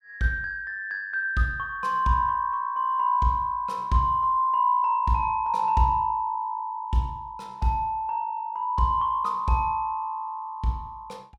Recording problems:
none

